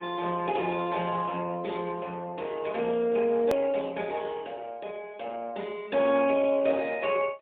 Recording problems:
telephone audio; 300 Hz to 3.5 kHz, AMR-NB, then MP3
edit click; at 3.5 s

